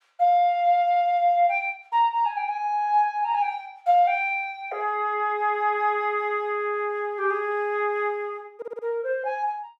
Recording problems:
audio stuttering; at 8.5 s

